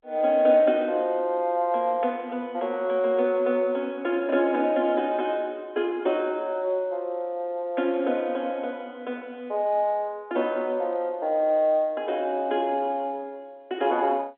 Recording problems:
telephone audio; 220 Hz to 3.4 kHz, G.711

